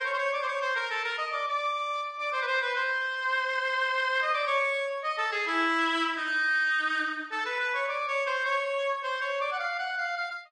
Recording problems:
lossy codec; Vorbis, log-spectral distance 2 dB

